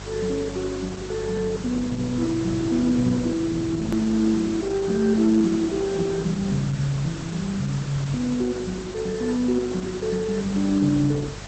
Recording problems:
lossy codec; Opus, log-spectral distance 8 dB, nothing above 13.1 kHz
hum; 50 Hz, harmonics up to 450 Hz, SNR 16 dB
background hiss; slope -2 dB per octave, SNR 14 dB
click at an edit; at 4 s

